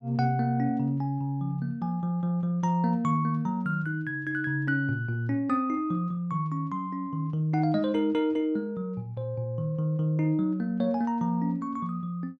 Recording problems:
none

